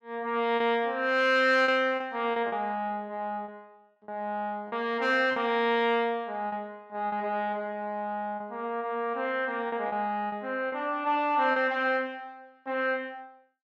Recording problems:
packet loss; 5% of the sound replaced, filled with repeated pitch periods

